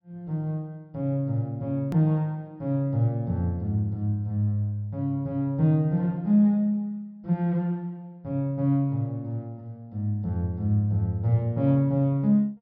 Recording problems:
low-pass filter; nothing above 5.5 kHz
click at an edit; at 2 s

